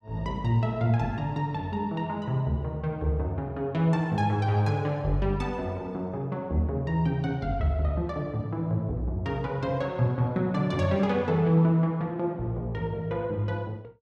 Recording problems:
none

